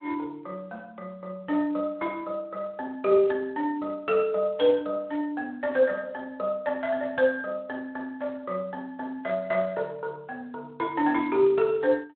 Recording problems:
telephone audio; 220 Hz to 3.9 kHz, Speex

